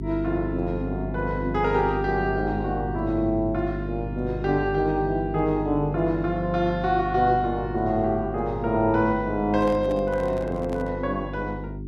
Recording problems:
mains hum; 50 Hz, harmonics up to 400 Hz, SNR 7 dB
handling noise; from 9.5 to 11 s; peak -10 dB vs average level

